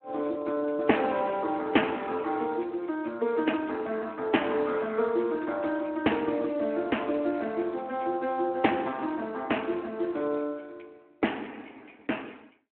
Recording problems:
phone line; 240 Hz to 3.3 kHz, Speex

